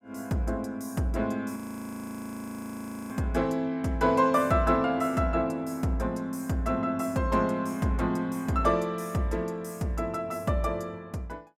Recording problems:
frozen audio; at 1.5 s for 1.5 s

